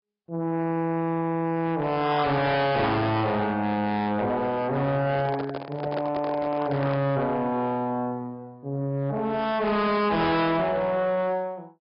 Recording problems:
treble missing; nothing above 5.2 kHz
codec artefacts; AAC, log-spectral distance 2 dB
distortion; soft clipping, signal-to-distortion ratio 6 dB
microphone handling noise; from 5 to 7 s; peak -2 dB vs average level

